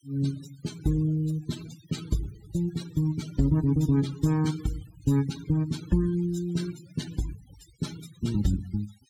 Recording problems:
denoising artefacts; signal-to-artefact ratio 17 dB

